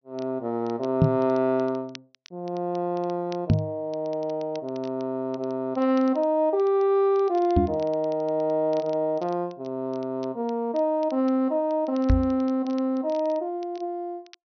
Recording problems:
low-pass filter; nothing above 6.2 kHz
crackling; vinyl, SNR 27 dB
knock on the microphone; 4 times, first at 1 s; peak +9 dB vs average level

